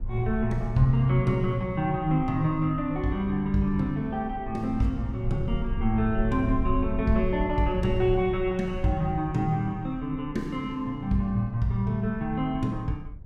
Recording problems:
low-frequency rumble; below 62 Hz, SNR 11 dB

